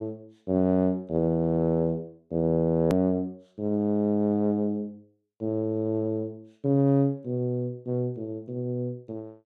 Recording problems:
click at an edit; at 3 s

